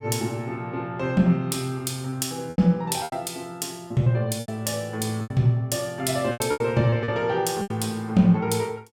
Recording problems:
lost packets; 8% of the sound replaced, filled with repeated pitch periods

